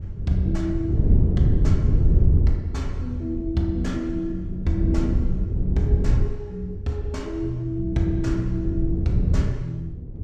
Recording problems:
wind noise; below 120 Hz, SNR -4 dB

